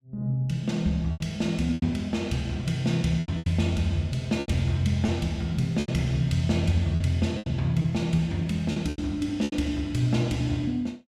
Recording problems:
lost packets; 8% of the sound replaced, filled with repeated pitch periods

